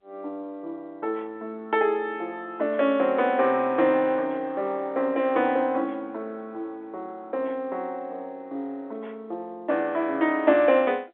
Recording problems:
telephone audio; 240 Hz to 3.6 kHz, G.711

